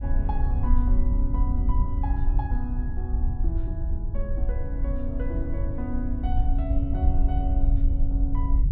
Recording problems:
low-frequency rumble; below 62 Hz, SNR -8 dB

